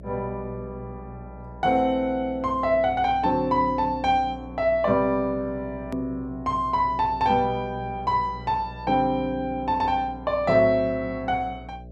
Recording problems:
hum; 60 Hz, harmonics up to 660 Hz, SNR 18 dB
hard cut with a click; at 6 s

